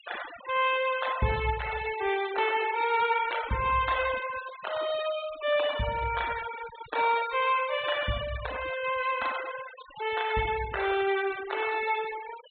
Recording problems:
treble missing; nothing above 4 kHz
noise reduction artefacts; signal-to-artefact ratio 12 dB

